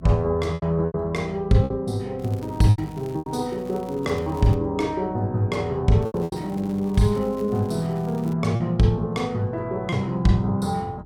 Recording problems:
hum; 50 Hz, harmonics up to 400 Hz, SNR 24 dB
packet loss; 6% of the sound replaced, filled with repeated pitch periods
crackle; from 2 to 4.5 s and from 6 to 8.5 s; loose cable, SNR 27 dB

